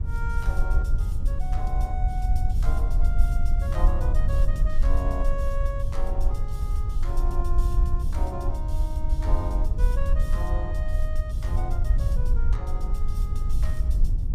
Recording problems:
low-frequency rumble; below 56 Hz, strongest tone 20 Hz, SNR -10 dB

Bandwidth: 15.5 kHz